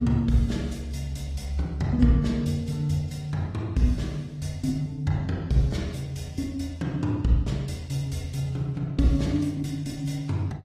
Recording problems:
codec artefacts; AAC, log-spectral distance 2 dB, nothing above 14.7 kHz

